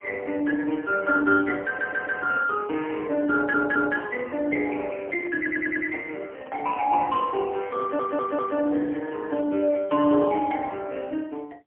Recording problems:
phone line; 240 Hz to 2.6 kHz, AMR-NB, then MP3
stutter; 4 times, first at 1.5 s
handling noise; from 4.5 to 9 s; peak -12 dB vs average level
crackle; from 8 to 11 s; loose cable, SNR 41 dB

